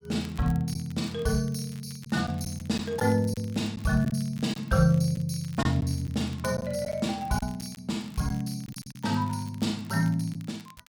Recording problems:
crackling; vinyl, SNR 24 dB
lost packets; 4% of the sound replaced, filled with silence

